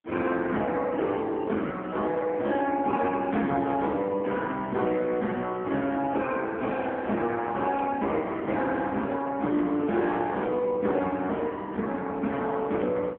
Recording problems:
phone line; 190 Hz to 3.4 kHz, AMR-NB

